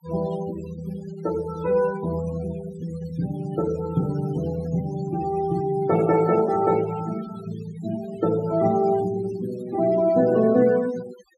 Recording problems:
noise reduction artefacts; signal-to-artefact ratio 17 dB

